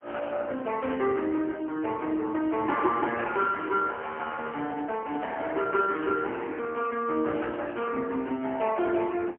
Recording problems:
phone line; 240 Hz to 3.4 kHz, AMR-NB, then MP3
microphone handling noise; from 2.5 to 6 s; peak -7 dB vs average level

